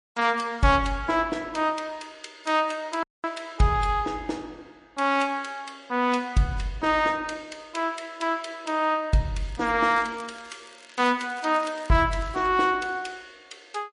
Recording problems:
codec artefacts; MP3, log-spectral distance 3 dB, nothing above 10.4 kHz
audio cutting out; at 3 s
crackling; at 9.5 s and from 10 to 12 s; loose cable, SNR 25 dB

